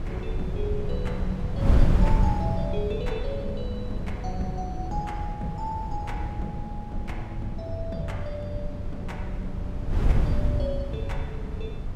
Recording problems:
rumble; below 84 Hz, SNR 5 dB
wind noise; below 110 Hz, SNR -4 dB

